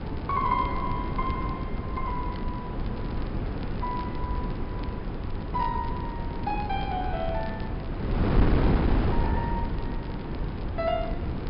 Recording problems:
low-pass filter; nothing above 5.5 kHz
wind on the microphone; below 290 Hz, SNR -2 dB
crackle; vinyl, SNR 22 dB

